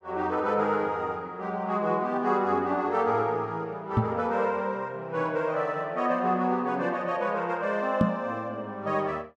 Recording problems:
microphone bump; at 4 s and at 8 s; peak +8 dB vs average level

